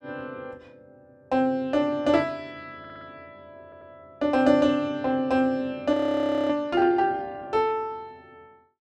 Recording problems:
stutter; at 3 s and at 3.5 s
audio freezing; at 6 s for 0.5 s

